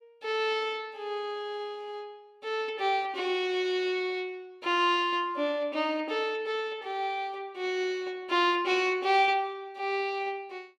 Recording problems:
none

